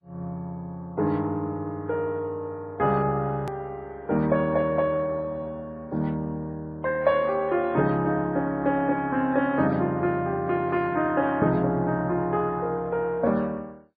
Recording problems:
lossy compression; MP2, then MP3, log-spectral distance 2 dB
edit click; at 3.5 s

